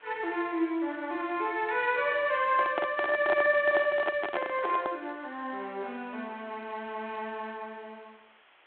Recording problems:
telephone audio; 260 Hz to 3.5 kHz, G.726
hiss; SNR 28 dB
handling noise; from 2.5 to 5 s; peak +1 dB vs average level

